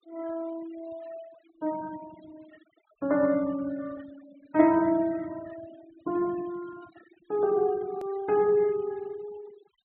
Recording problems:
treble missing; nothing above 4 kHz
denoising artefacts; signal-to-artefact ratio 22 dB
click at an edit; at 8 s

